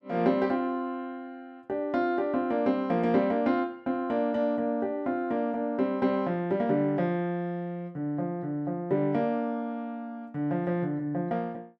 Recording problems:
none

